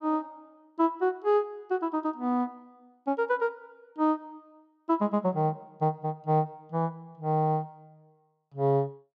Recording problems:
none

